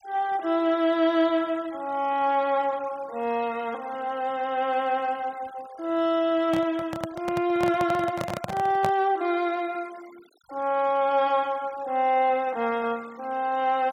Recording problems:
denoising artefacts; signal-to-artefact ratio 24 dB
microphone handling noise; from 6.5 to 9 s; peak 0 dB vs average level

